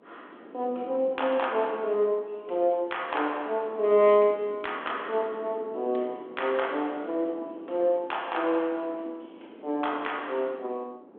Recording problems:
telephone audio; 260 Hz to 3.5 kHz, G.726
wind noise; below 500 Hz, SNR 19 dB

